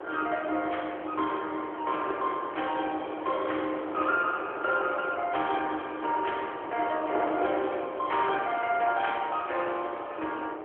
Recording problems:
telephone audio; 280 Hz to 3.3 kHz, AMR-NB
wind noise; below 970 Hz, SNR 8 dB

